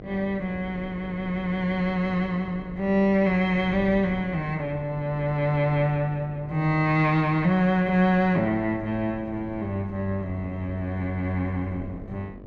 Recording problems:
electrical hum; 50 Hz, harmonics up to 1.3 kHz, SNR 21 dB
wind on the microphone; below 250 Hz, SNR 18 dB

